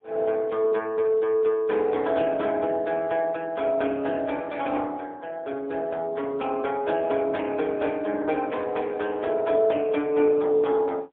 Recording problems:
telephone audio; 240 Hz to 3.5 kHz, AMR-NB, then MP3

